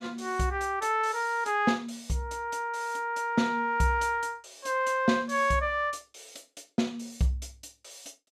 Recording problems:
none

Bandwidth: 15 kHz